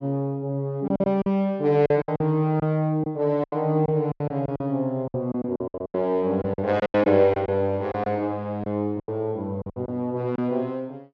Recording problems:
packet loss; 12% of the sound replaced, filled with silence

